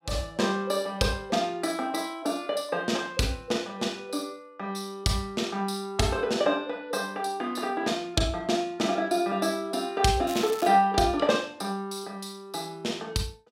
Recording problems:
crackle; at 10 s; loose cable, SNR 14 dB

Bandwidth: 16 kHz